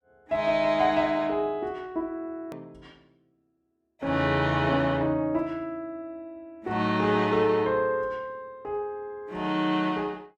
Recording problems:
click at an edit; at 2.5 s

